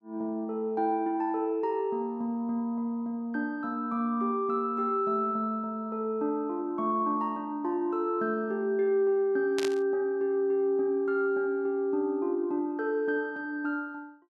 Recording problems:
static burst; at 9.5 s; peak -2 dB vs average level

